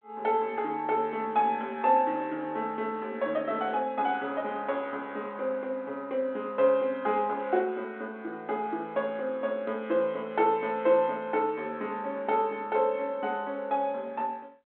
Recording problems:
phone line; 260 Hz to 3.6 kHz, G.726

